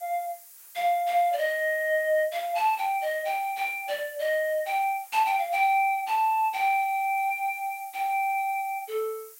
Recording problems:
background hiss; SNR 20 dB

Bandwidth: 16 kHz